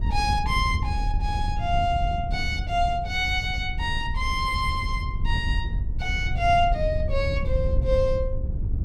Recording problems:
wind noise; below 86 Hz, SNR 3 dB

